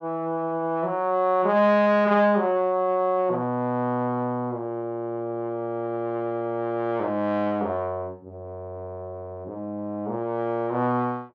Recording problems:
none

